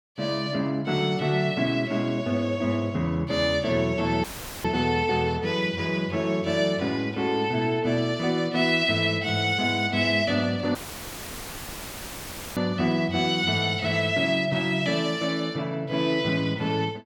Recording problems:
dropout; at 4 s and at 11 s for 2 s; filled with static

